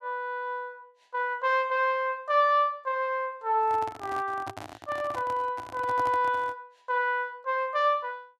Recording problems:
microphone handling noise; from 3.5 to 6.5 s; peak -7 dB vs average level

